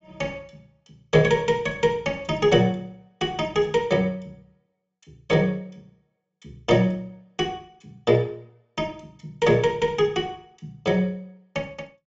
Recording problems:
low-pass filter; nothing above 7.8 kHz

